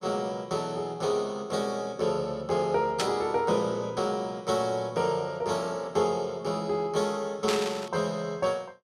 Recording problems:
burst of static; at 3 s and at 7.5 s; peak +3 dB vs average level

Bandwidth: 13.5 kHz